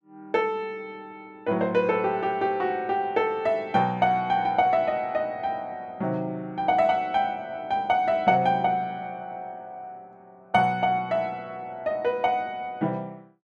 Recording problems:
none

